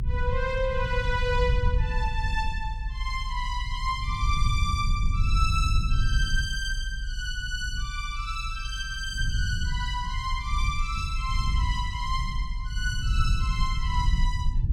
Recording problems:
low-frequency rumble; below 80 Hz, SNR -1 dB

